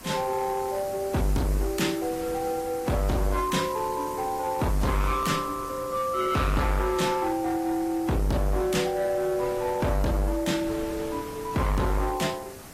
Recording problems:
codec artefacts; AAC, log-spectral distance 5 dB, nothing above 14.7 kHz
distorted audio; hard clipping, signal-to-distortion ratio 7 dB
background hiss; SNR 15 dB
wind on the microphone; below 1.6 kHz, SNR 20 dB

